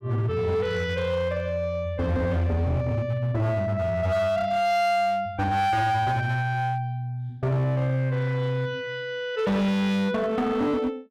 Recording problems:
distorted audio; hard clipping, signal-to-distortion ratio 10 dB

